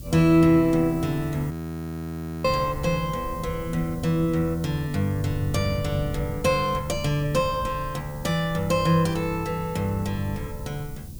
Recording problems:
background hiss; SNR 22 dB
wind on the microphone; below 150 Hz, SNR 13 dB
audio freezing; at 1.5 s for 1 s

